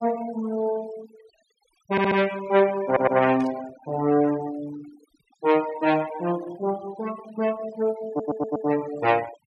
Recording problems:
denoising artefacts; signal-to-artefact ratio 18 dB
audio stuttering; at 2 s, at 3 s and at 8 s
burst of static; at 3.5 s; peak -20 dB vs average level

